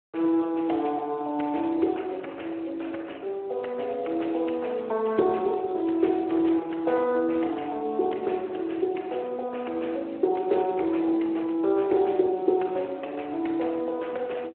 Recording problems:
phone line; 280 Hz to 3.1 kHz, Speex

